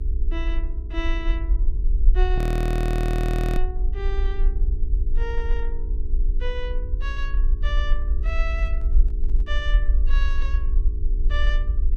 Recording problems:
electrical hum; 60 Hz, harmonics up to 480 Hz, SNR 12 dB
rumble; below 48 Hz, SNR -9 dB
frozen audio; at 2.5 s for 1 s
microphone handling noise; from 8 to 9.5 s; peak -9 dB vs average level

